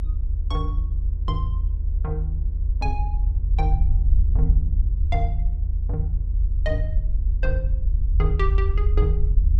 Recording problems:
hum; 60 Hz, harmonics up to 1.1 kHz, SNR 22 dB
rumble; below 74 Hz, strongest tone 44 Hz, SNR -8 dB

